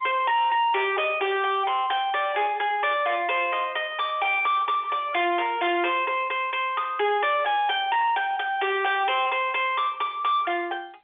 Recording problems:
telephone audio; 300 Hz to 3.6 kHz, G.711
distorted audio; soft clipping, signal-to-distortion ratio 6 dB

